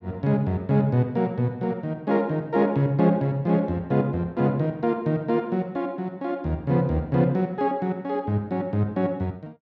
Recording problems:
none

